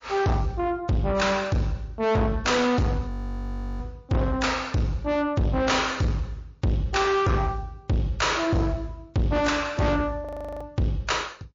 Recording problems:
lossy codec; MP3, log-spectral distance 2 dB
distortion; soft clipping, signal-to-distortion ratio 7 dB
frozen audio; at 3 s for 0.5 s and at 10 s

